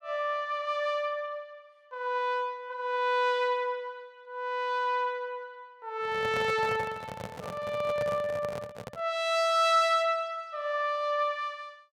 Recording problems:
handling noise; from 6 to 9 s; peak -4 dB vs average level

